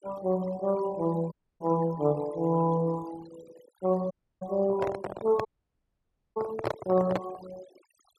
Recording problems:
noise reduction artefacts; signal-to-artefact ratio 18 dB
dropout; at 1.5 s, at 4 s and at 5.5 s for 1 s
handling noise; from 4.5 to 7.5 s; peak +3 dB vs average level

